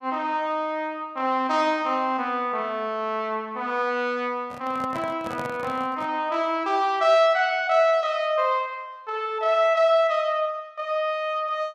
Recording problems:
microphone handling noise; from 4.5 to 6 s; peak -7 dB vs average level

